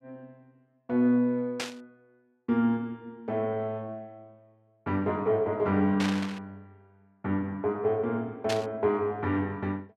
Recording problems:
burst of static; at 1.5 s, at 6 s and at 8.5 s; peak 0 dB vs average level

